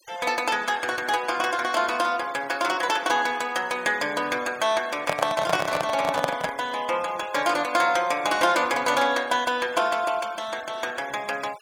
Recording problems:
noise reduction artefacts; signal-to-artefact ratio 20 dB
handling noise; from 5 to 6.5 s; peak +4 dB vs average level

